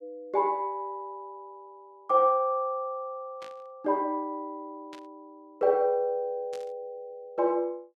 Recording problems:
burst of static; at 3.5 s, at 5 s and at 6.5 s; peak -14 dB vs average level

